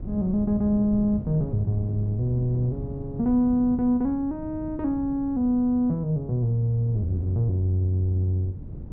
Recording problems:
wind on the microphone; below 190 Hz, SNR 13 dB

